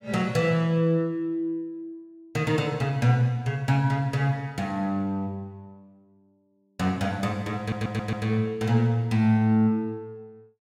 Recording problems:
audio stuttering; at 7.5 s

